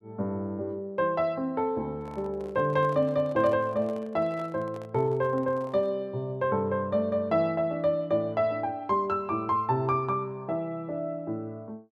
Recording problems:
handling noise; from 2 to 6 s; peak -11 dB vs average level

